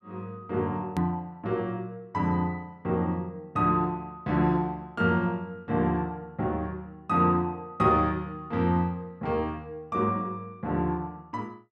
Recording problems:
click at an edit; at 1 s

